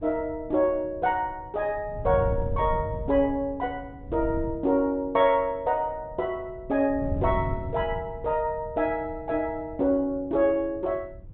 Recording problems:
treble cut off; nothing above 4 kHz
wind on the microphone; below 130 Hz, SNR 11 dB

